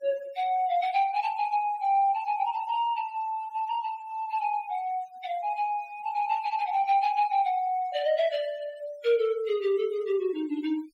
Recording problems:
noise reduction artefacts; signal-to-artefact ratio 22 dB

